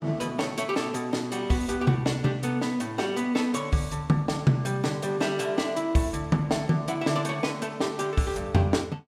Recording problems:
none

